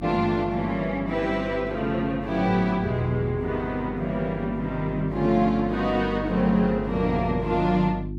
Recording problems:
hum; 50 Hz, harmonics up to 350 Hz, SNR 11 dB

